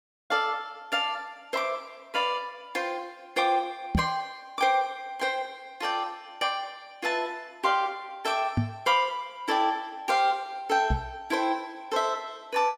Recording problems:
knock on the microphone; at 4 s, at 8.5 s and at 11 s; peak +7 dB vs average level

